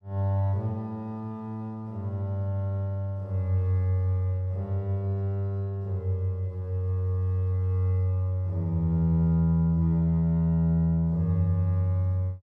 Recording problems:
none

